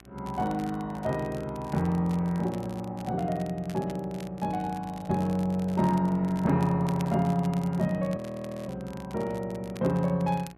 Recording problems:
hum; 60 Hz, harmonics up to 1.5 kHz, SNR 27 dB
crackle; vinyl, SNR 22 dB
audio freezing; at 8 s for 0.5 s

